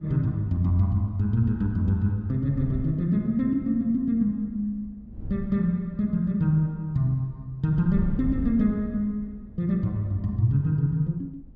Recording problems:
wind noise; below 100 Hz, SNR 16 dB

